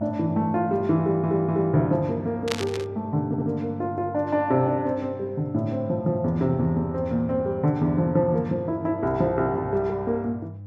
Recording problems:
mains hum; 50 Hz, harmonics up to 500 Hz, SNR 16 dB
audio stuttering; at 1 s and at 3.5 s
static burst; at 2.5 s; peak +1 dB vs average level

